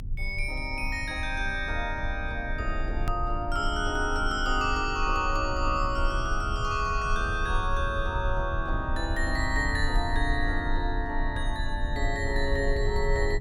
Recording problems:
rumble; below 62 Hz, strongest tone 28 Hz, SNR 4 dB
hard cut with a click; at 3 s

